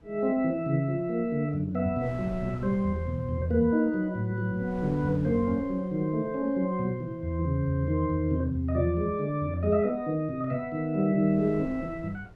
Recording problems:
wind on the microphone; below 280 Hz, SNR 21 dB

